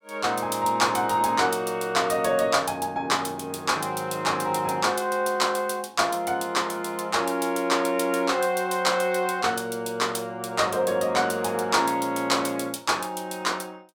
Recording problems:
none

